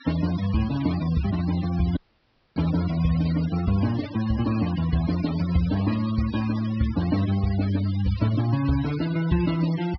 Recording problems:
low-pass filter; nothing above 5.5 kHz
denoising artefacts; signal-to-artefact ratio 15 dB
audio cutting out; at 2 s for 0.5 s

